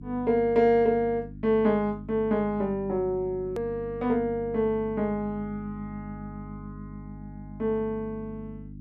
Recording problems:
hum; 50 Hz, harmonics up to 300 Hz, SNR 15 dB
edit click; at 3.5 s

